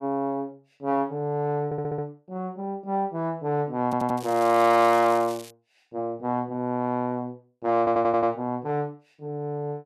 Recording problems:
audio stuttering; at 1.5 s, at 4 s and at 8 s
crackle; from 4 to 5.5 s; loose cable, SNR 18 dB

